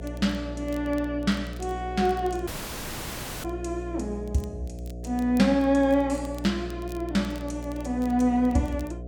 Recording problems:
electrical hum; 60 Hz, harmonics up to 720 Hz, SNR 11 dB
crackling; vinyl, SNR 27 dB
audio cutting out; at 2.5 s for 1 s

